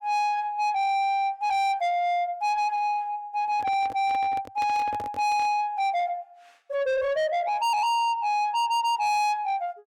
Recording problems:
distortion; soft clipping, signal-to-distortion ratio 7 dB
microphone handling noise; from 3.5 to 5.5 s; peak -7 dB vs average level

